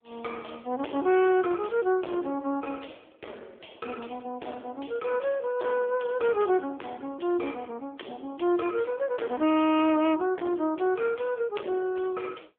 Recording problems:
phone line; 240 Hz to 3.4 kHz, AMR-NB
distorted audio; hard clipping, uneven, signal-to-distortion ratio 8 dB

